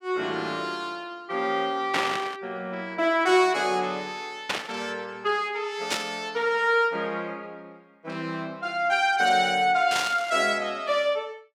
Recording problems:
burst of static; 4 times, first at 2 s; peak +3 dB vs average level

